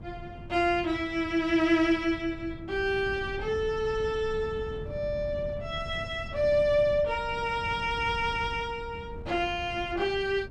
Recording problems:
wind noise; below 160 Hz, SNR 14 dB

